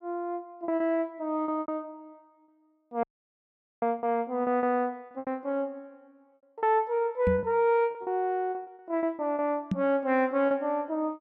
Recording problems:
packet loss; 10% of the sound replaced, filled with repeated pitch periods
audio cutting out; at 3 s for 1 s
microphone thump; at 7.5 s and at 9.5 s; peak +4 dB vs average level

